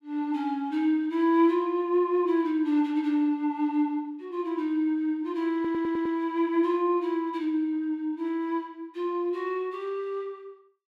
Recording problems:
audio stuttering; at 5.5 s

